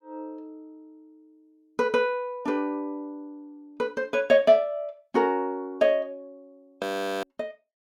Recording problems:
audio freezing; at 7 s

